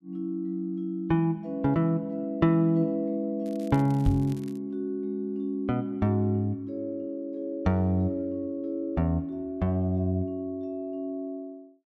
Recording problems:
crackling; from 3.5 to 4.5 s; loose cable, SNR 25 dB
microphone bump; at 4 s; peak +7 dB vs average level

